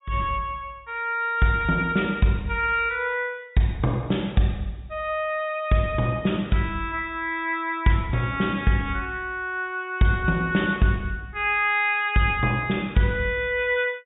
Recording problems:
low-pass filter; nothing above 4 kHz

